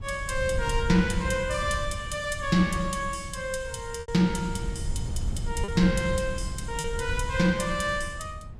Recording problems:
wind on the microphone; below 100 Hz, SNR 8 dB
packet loss; 1.9% of the sound replaced, filled with repeated pitch periods

